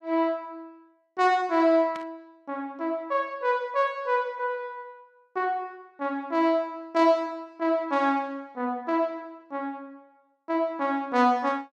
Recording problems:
static burst; at 2 s; peak -12 dB vs average level

